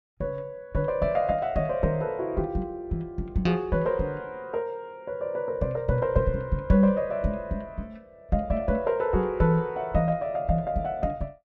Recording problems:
none

